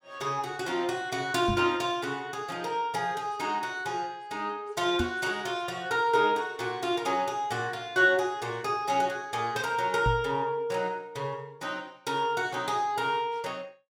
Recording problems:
microphone bump; at 1.5 s, at 5 s and at 10 s; peak +3 dB vs average level

